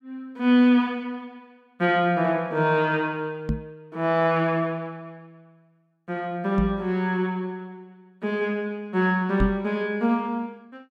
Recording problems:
microphone bump; at 3.5 s, at 6.5 s and at 9.5 s; peak +2 dB vs average level

